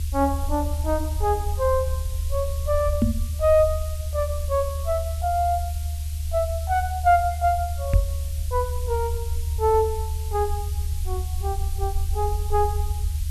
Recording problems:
background hiss; slope +6 dB per octave, SNR 16 dB
rumble; below 78 Hz, strongest tone 76 Hz, SNR 3 dB
microphone bump; at 3 s and at 8 s; peak +8 dB vs average level

